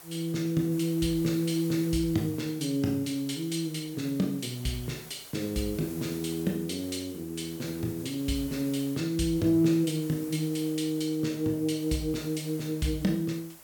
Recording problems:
hiss; SNR 16 dB

